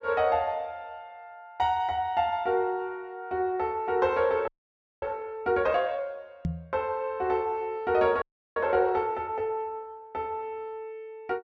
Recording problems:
audio freezing; at 4.5 s for 0.5 s and at 8 s
microphone thump; at 6.5 s; peak +2 dB vs average level

